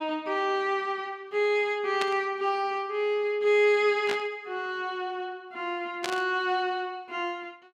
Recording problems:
static burst; at 2 s, at 4 s and at 6 s; peak 0 dB vs average level

